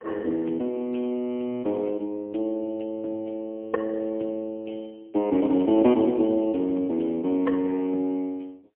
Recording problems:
telephone audio; 190 Hz to 3.2 kHz, AMR-NB, then MP3

